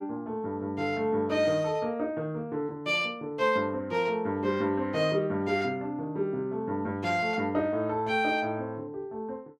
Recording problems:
none

